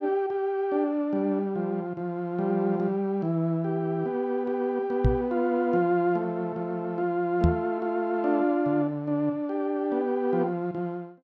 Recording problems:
microphone bump; at 5 s and at 7.5 s; peak +7 dB vs average level

